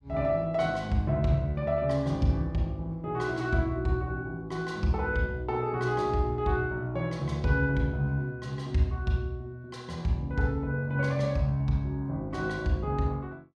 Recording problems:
none

